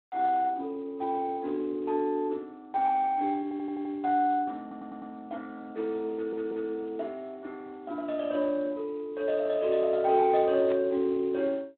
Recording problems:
phone line; 240 Hz to 3.7 kHz, Speex
audio stuttering; at 3.5 s, at 4.5 s and at 6 s
static burst; at 11 s; peak -11 dB vs average level

